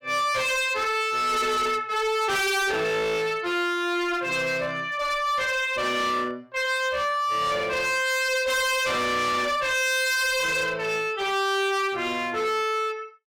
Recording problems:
distorted audio; hard clipping, signal-to-distortion ratio 6 dB

